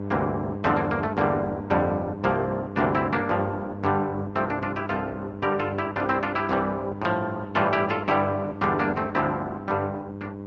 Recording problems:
lossy codec; Opus, then Vorbis, log-spectral distance 2 dB
hum; 50 Hz, harmonics up to 1.1 kHz, SNR 10 dB

